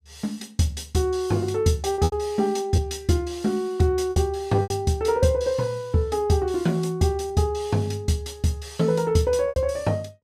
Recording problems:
packet loss; 4% of the sound replaced, filled with repeated pitch periods

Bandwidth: 14.5 kHz